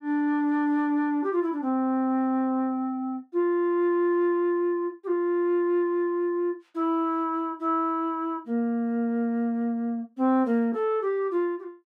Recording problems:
none

